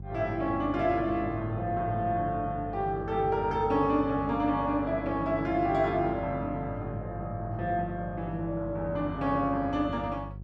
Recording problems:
mains hum; 50 Hz, harmonics up to 400 Hz, SNR 12 dB

